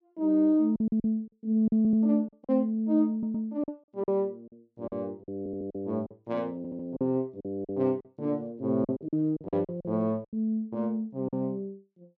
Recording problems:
lost packets; 11% of the sound replaced, filled with silence
stutter; 4 times, first at 2 s

